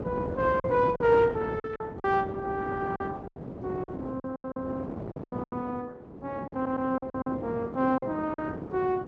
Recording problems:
lossy codec; Opus, log-spectral distance 2 dB
wind noise; below 470 Hz, SNR 9 dB
lost packets; 11% of the sound replaced, filled with silence
stutter; at 6.5 s

